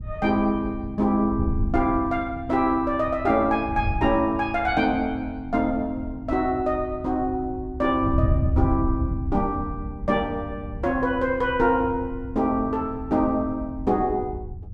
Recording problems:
wind on the microphone; below 110 Hz, SNR 8 dB

